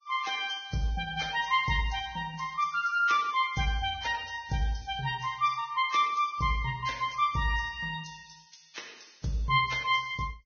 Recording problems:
codec artefacts; Vorbis, log-spectral distance 5 dB, nothing above 6.3 kHz

